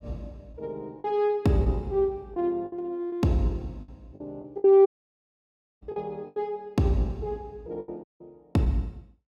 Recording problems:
lost packets; 8% of the sound replaced, filled with the last packet
audio cutting out; at 5 s for 1 s and at 8 s

